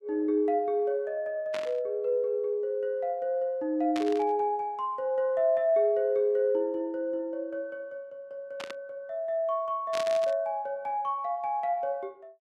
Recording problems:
static burst; 4 times, first at 1.5 s; peak -5 dB vs average level

